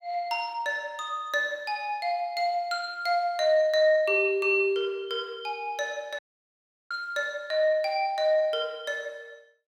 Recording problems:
audio cutting out; at 6 s for 0.5 s

